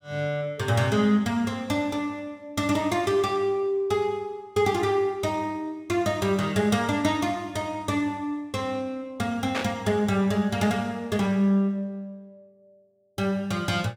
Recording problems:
burst of static; at 9.5 s; peak 0 dB vs average level

